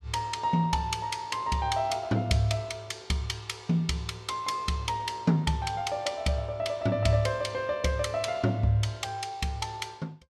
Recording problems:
none

